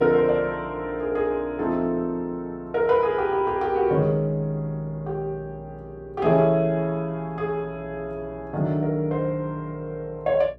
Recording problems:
hum; 60 Hz, harmonics up to 660 Hz, SNR 23 dB

